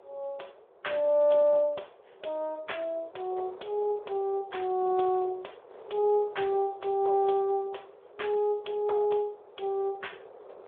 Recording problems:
telephone audio; 320 Hz to 3.5 kHz, Speex
wind on the microphone; below 690 Hz, SNR 22 dB

